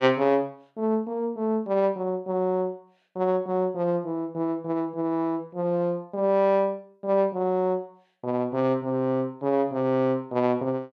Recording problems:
none

